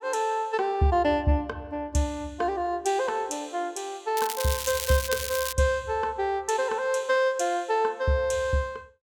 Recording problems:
crackling; from 4 to 5.5 s; loose cable, SNR 5 dB

